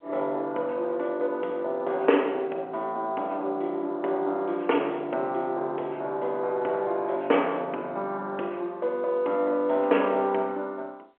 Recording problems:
phone line; 320 Hz to 3.3 kHz, G.711

